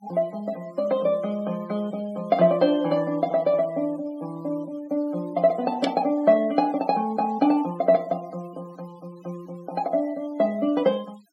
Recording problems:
denoising artefacts; signal-to-artefact ratio 25 dB

